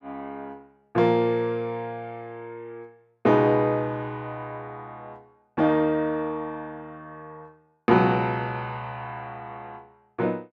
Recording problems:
none

